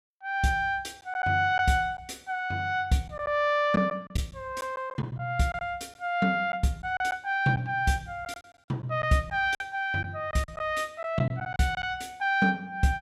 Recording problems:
packet loss; 5% of the sound replaced, filled with silence

